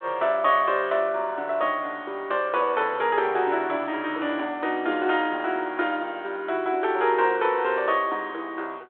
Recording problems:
phone line; 260 Hz to 3.5 kHz, G.726

